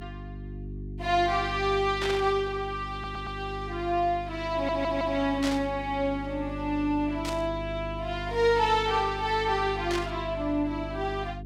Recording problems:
electrical hum; 50 Hz, harmonics up to 400 Hz, SNR 11 dB
burst of static; 4 times, first at 2 s; peak -2 dB vs average level
stutter; at 3 s and at 4.5 s

